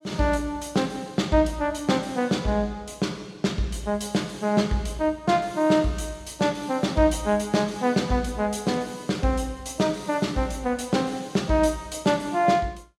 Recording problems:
none

